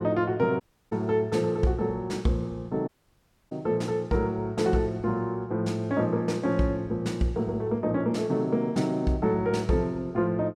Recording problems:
audio cutting out; at 0.5 s and at 3 s for 0.5 s

